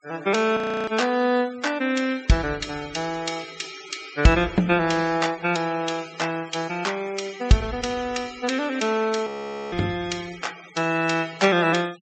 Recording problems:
treble missing; nothing above 8 kHz
noise reduction artefacts; signal-to-artefact ratio 19 dB
audio freezing; at 0.5 s and at 9.5 s

